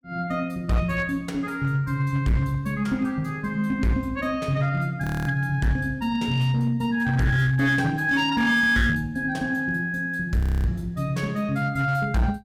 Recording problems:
distortion; hard clipping, signal-to-distortion ratio 11 dB
audio freezing; at 5 s and at 10 s

